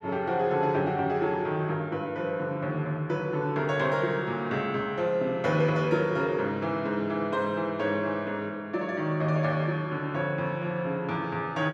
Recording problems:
none

